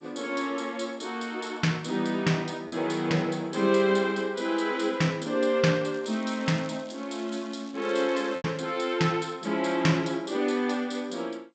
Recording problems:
lossy codec; G.722, log-spectral distance 4 dB, nothing above 8 kHz
packet loss; 1% of the sound replaced, filled with repeated pitch periods
crackle; from 6 to 8.5 s; loose cable, SNR 25 dB

